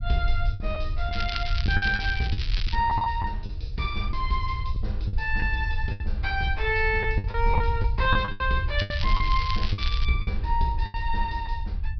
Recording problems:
treble missing; nothing above 5.5 kHz
rumble; below 76 Hz, SNR 2 dB
packet loss; 10% of the sound replaced, filled with the last packet
crackle; from 1 to 3 s and from 9 to 10 s; loose cable, SNR 7 dB

